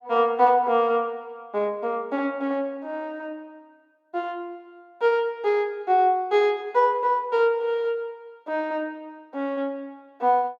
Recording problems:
none

